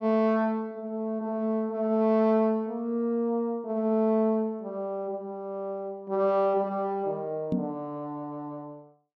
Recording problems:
knock on the microphone; at 7.5 s; peak +4 dB vs average level

